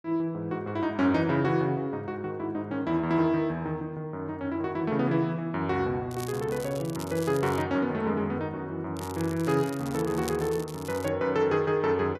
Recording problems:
crackling; from 6 to 7.5 s and from 9 to 11 s; loose cable, SNR 16 dB

